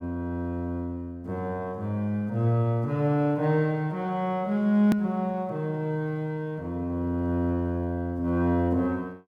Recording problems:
click at an edit; at 5 s

